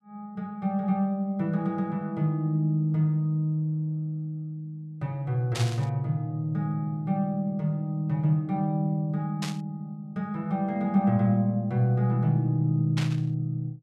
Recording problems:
burst of static; at 5.5 s, at 9.5 s and at 13 s; peak -2 dB vs average level

